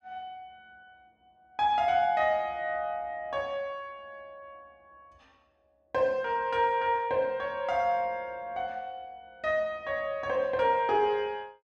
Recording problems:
none

